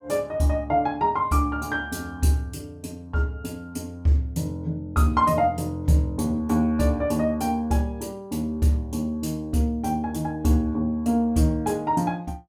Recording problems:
none

